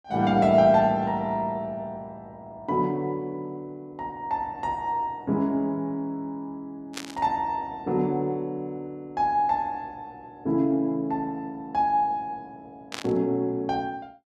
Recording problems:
static burst; at 7 s and at 13 s; peak -3 dB vs average level

